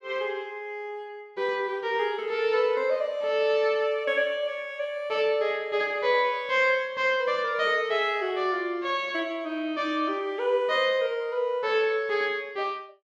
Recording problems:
none

